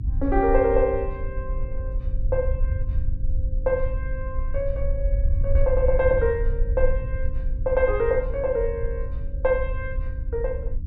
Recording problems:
hum; 50 Hz, harmonics up to 300 Hz, SNR 19 dB
low-frequency rumble; below 64 Hz, SNR 3 dB

